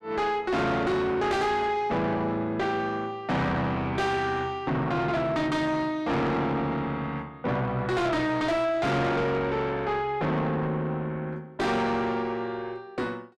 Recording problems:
distortion; soft clipping, signal-to-distortion ratio 6 dB

